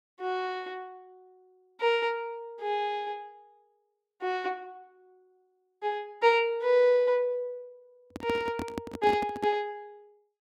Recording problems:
handling noise; from 8 to 9.5 s; peak -2 dB vs average level

